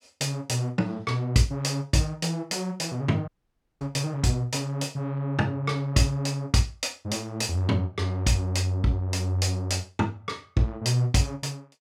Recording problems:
audio cutting out; at 3.5 s for 0.5 s

